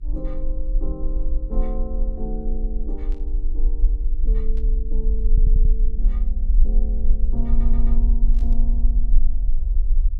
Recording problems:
mains hum; 60 Hz, harmonics up to 420 Hz, SNR 19 dB
low-frequency rumble; below 40 Hz, strongest tone 18 Hz, SNR -12 dB
burst of static; at 3 s, at 4.5 s and at 8.5 s; peak -13 dB vs average level
stutter; at 5.5 s and at 7.5 s

